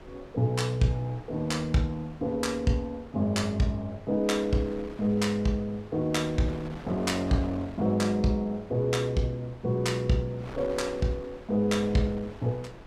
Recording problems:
wind noise; below 940 Hz, SNR 17 dB

